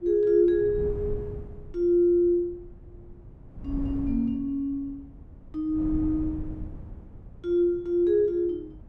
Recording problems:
wind noise; below 140 Hz, SNR 15 dB

